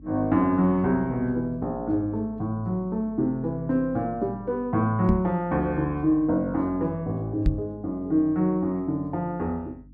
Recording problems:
electrical hum; 50 Hz, harmonics up to 300 Hz, SNR 21 dB
microphone thump; at 5 s and at 7.5 s; peak +6 dB vs average level

